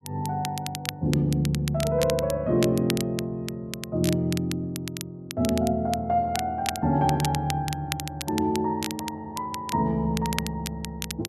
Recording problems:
crackle; vinyl, SNR 10 dB

